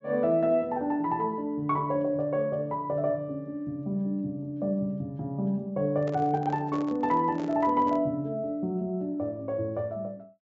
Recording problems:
low-pass filter; nothing above 8 kHz
microphone handling noise; from 6 to 8 s; peak -8 dB vs average level

